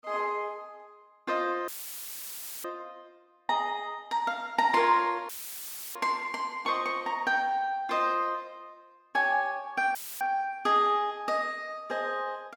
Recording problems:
dropout; at 1.5 s for 1 s, at 5.5 s for 0.5 s and at 10 s; filled with static

